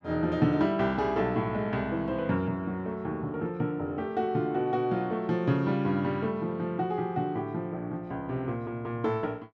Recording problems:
none

